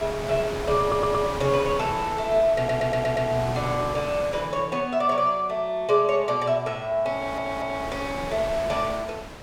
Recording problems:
wind noise; below 1.9 kHz, SNR 10 dB
stutter; at 1 s, at 2.5 s and at 7 s

